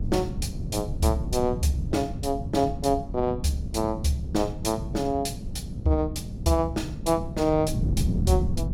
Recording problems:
hum; 60 Hz, harmonics up to 840 Hz, SNR 25 dB
wind on the microphone; below 180 Hz, SNR 5 dB

